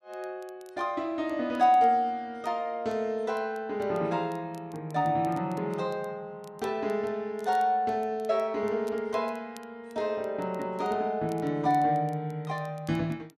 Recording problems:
crackle; vinyl, SNR 29 dB

